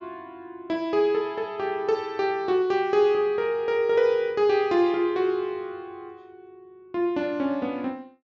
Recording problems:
treble cut off; nothing above 8 kHz

